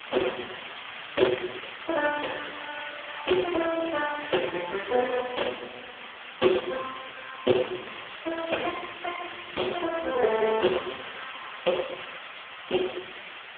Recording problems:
phone line; 280 Hz to 2.4 kHz, AMR-NB
background hiss; SNR 10 dB

